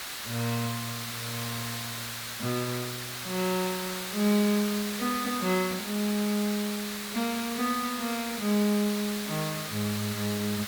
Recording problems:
hiss; SNR 4 dB

